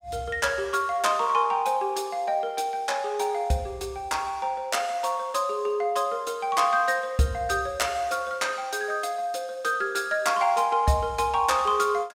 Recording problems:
none

